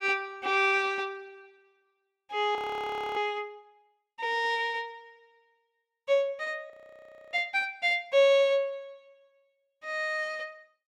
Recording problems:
audio freezing; at 2.5 s for 0.5 s and at 6.5 s for 0.5 s

